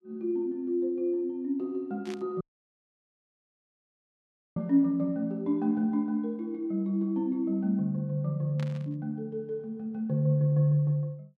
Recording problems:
burst of static; at 2 s and at 8.5 s; peak -12 dB vs average level
dropout; at 2.5 s for 2 s

